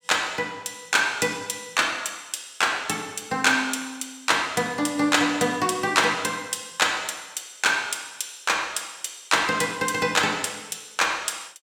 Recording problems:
none

